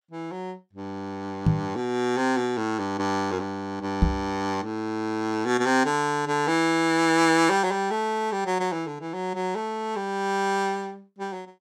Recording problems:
microphone bump; at 1.5 s and at 4 s; peak +8 dB vs average level

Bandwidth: 17 kHz